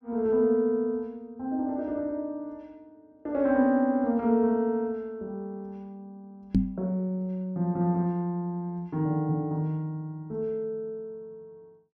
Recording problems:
microphone thump; at 6.5 s; peak +9 dB vs average level

